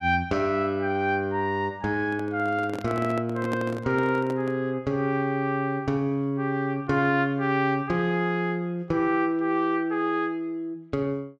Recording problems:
microphone handling noise; from 2 to 4.5 s; peak -2 dB vs average level

